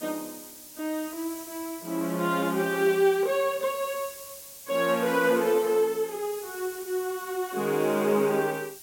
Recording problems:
background hiss; SNR 14 dB

